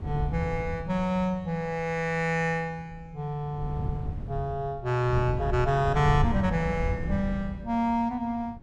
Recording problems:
wind noise; below 120 Hz, SNR 6 dB

